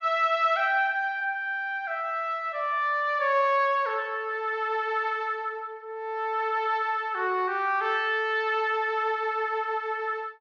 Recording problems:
treble cut off; nothing above 7 kHz

